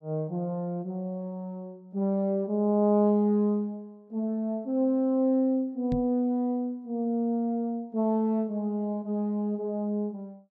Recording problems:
microphone thump; at 6 s; peak -2 dB vs average level

